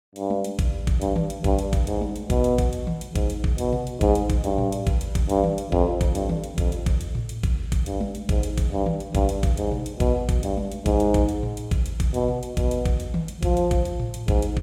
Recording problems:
none

